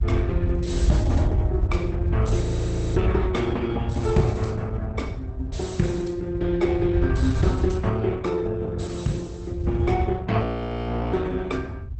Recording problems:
lossy codec; Opus, log-spectral distance 2 dB, nothing above 8.2 kHz
low-frequency rumble; below 100 Hz, SNR 1 dB
frozen audio; at 2.5 s for 0.5 s and at 10 s for 0.5 s

